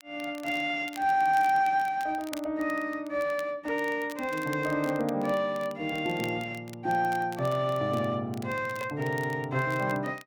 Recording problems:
crackling; vinyl, SNR 21 dB

